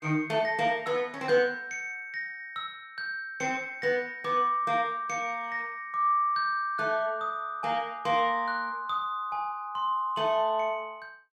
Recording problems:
none

